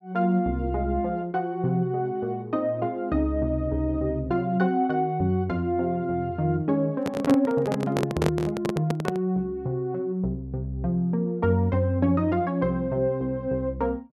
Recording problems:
microphone handling noise; from 7 to 9.5 s; peak +4 dB vs average level

